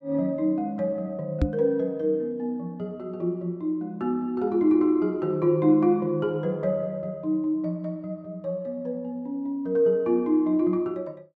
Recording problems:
knock on the microphone; at 1.5 s; peak +6 dB vs average level

